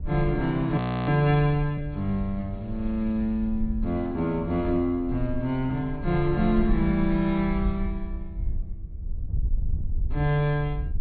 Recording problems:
treble missing; nothing above 4.4 kHz
wind on the microphone; below 64 Hz, SNR 9 dB
audio freezing; at 1 s

